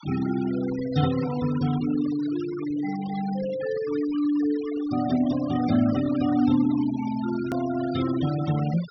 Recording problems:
treble cut off; nothing above 5.8 kHz
noise reduction artefacts; signal-to-artefact ratio 14 dB
click at an edit; at 7.5 s

